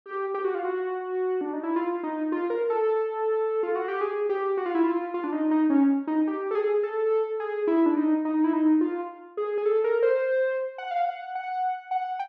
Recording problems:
none

